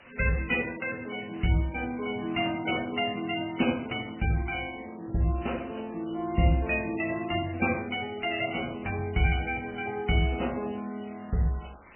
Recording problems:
codec artefacts; MP3, log-spectral distance 9 dB, nothing above 2.6 kHz
hiss; SNR 23 dB

